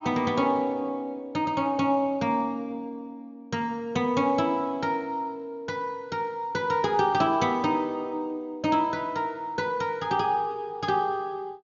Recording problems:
low-pass filter; nothing above 7 kHz

